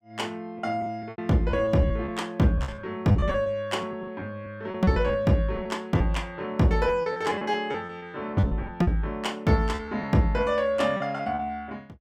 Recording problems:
lost packets; 11% of the sound replaced, filled with repeated pitch periods

